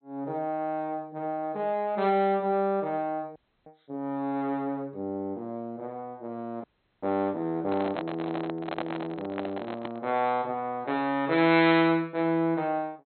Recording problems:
low-pass filter; nothing above 4.1 kHz
audio freezing; at 3.5 s and at 6.5 s
handling noise; from 7.5 to 10 s; peak -1 dB vs average level

